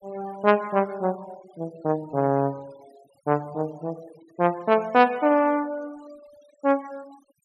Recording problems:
denoising artefacts; signal-to-artefact ratio 26 dB

